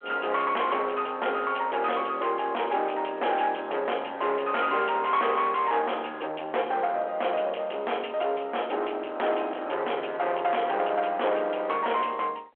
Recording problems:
phone line; 370 Hz to 3.3 kHz, G.726
distorted audio; soft clipping, signal-to-distortion ratio 8 dB

